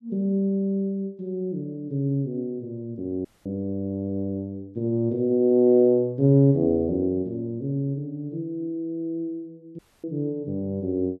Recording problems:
dropout; at 3.5 s and at 10 s

